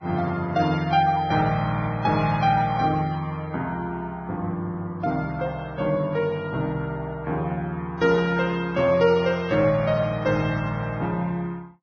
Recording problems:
lossy compression; Vorbis, log-spectral distance 2 dB, nothing above 5.8 kHz

